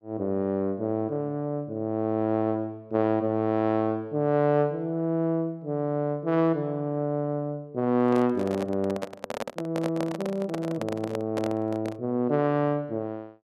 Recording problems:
microphone handling noise; from 8 to 12 s; peak -1 dB vs average level

